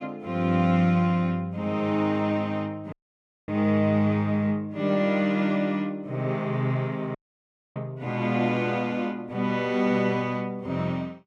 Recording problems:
dropout; at 3 s for 0.5 s and at 7 s for 0.5 s

